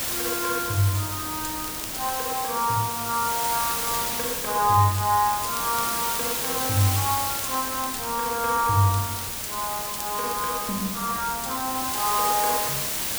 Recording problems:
background hiss; slope 0 dB per octave, SNR 1 dB
wind noise; below 1.1 kHz, SNR 20 dB
crackling; vinyl, SNR 18 dB

